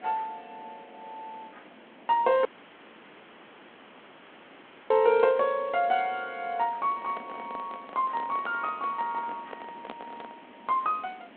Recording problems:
phone line; 170 Hz to 3.7 kHz, G.726
background hiss; SNR 23 dB
audio cutting out; at 2.5 s for 2.5 s
handling noise; from 7 to 11 s; peak -7 dB vs average level

